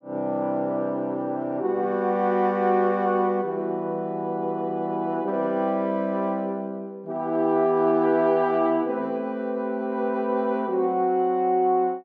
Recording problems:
none

